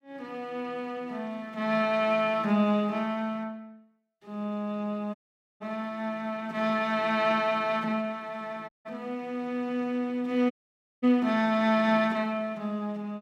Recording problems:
audio cutting out; at 5 s, at 8.5 s and at 11 s for 0.5 s

